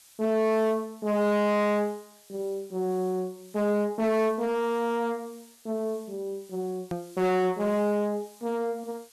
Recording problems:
distortion; hard clipping, signal-to-distortion ratio 11 dB
hiss; slope +3 dB per octave, SNR 25 dB
hard cut with a click; at 7 s

